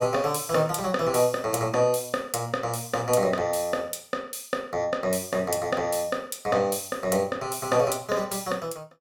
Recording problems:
none

